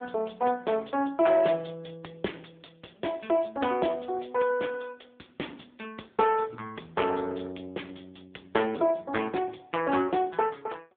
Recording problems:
telephone audio; 220 Hz to 3.6 kHz, AMR-NB

